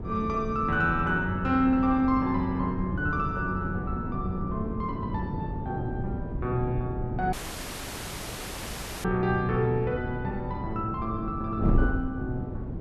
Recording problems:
wind on the microphone; below 230 Hz, SNR 5 dB
dropout; at 7.5 s for 1.5 s

